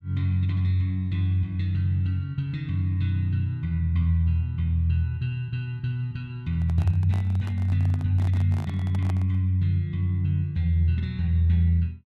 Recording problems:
handling noise; from 6.5 to 9.5 s; peak -10 dB vs average level

